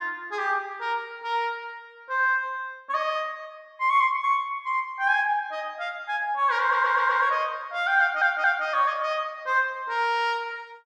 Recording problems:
audio stuttering; at 6.5 s and at 8 s

